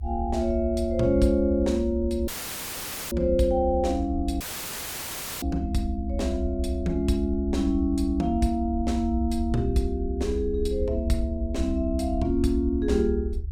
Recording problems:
low-frequency rumble; below 72 Hz, strongest tone 70 Hz, SNR 6 dB
dropout; at 2.5 s for 1 s and at 4.5 s for 1 s

